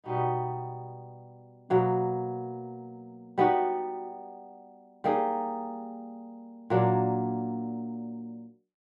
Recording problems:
none

